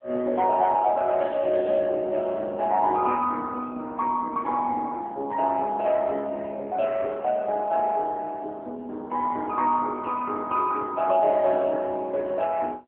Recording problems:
telephone audio; 280 Hz to 3.4 kHz, AMR-NB

